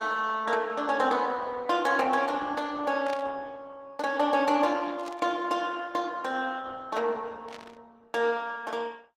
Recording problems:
lossy compression; Opus, log-spectral distance 3 dB
burst of static; at 3 s, at 5 s and at 7.5 s; peak -10 dB vs average level

